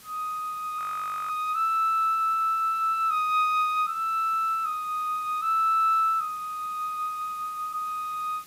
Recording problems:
background hiss; slope 0 dB per octave, SNR 23 dB
frozen audio; at 1 s for 0.5 s

